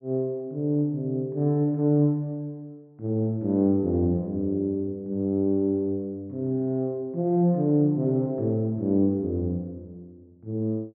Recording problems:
low-pass filter; nothing above 3.3 kHz

